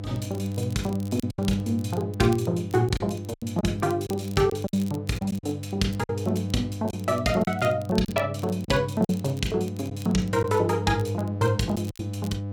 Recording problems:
electrical hum; 50 Hz, harmonics up to 700 Hz, SNR 7 dB
crackle; vinyl, SNR 22 dB
packet loss; 6% of the sound replaced, filled with silence

